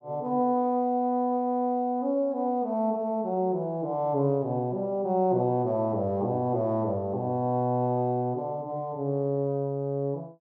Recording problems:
none

